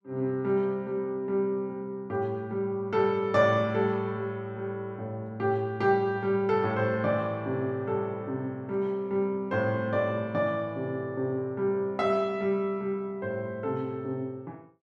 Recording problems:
none

